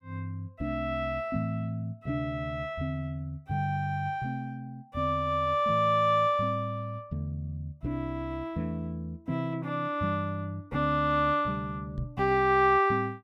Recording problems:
knock on the microphone; at 12 s; peak -2 dB vs average level

